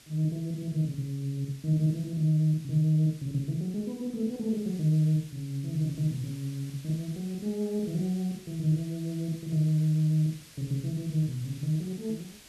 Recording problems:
hiss; SNR 21 dB

